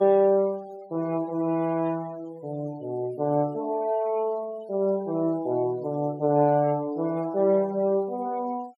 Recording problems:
denoising artefacts; signal-to-artefact ratio 25 dB

